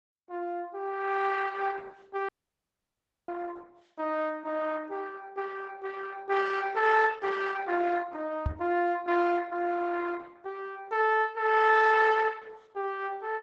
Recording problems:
lossy compression; Opus, log-spectral distance 4 dB, nothing above 7.8 kHz
audio cutting out; at 2.5 s for 1 s
microphone bump; at 8.5 s; peak +2 dB vs average level

